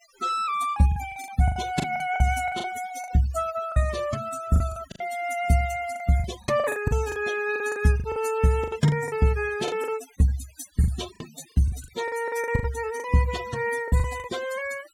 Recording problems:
noise reduction artefacts; signal-to-artefact ratio 15 dB
packet loss; 13% of the sound replaced, filled with the last packet

